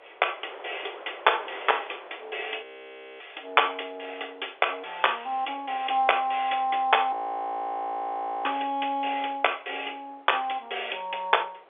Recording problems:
telephone audio; 320 Hz to 3.5 kHz, G.711
wind noise; below 1.3 kHz, SNR 20 dB
frozen audio; at 2.5 s for 0.5 s and at 7 s for 1.5 s

